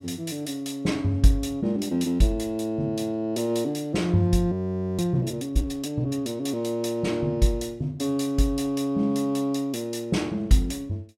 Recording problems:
audio freezing; at 4.5 s

